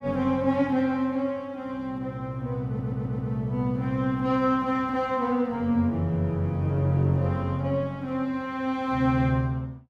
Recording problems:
audio stuttering; at 2.5 s

